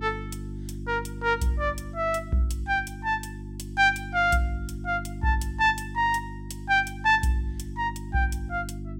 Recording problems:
electrical hum; 50 Hz, harmonics up to 350 Hz, SNR 12 dB

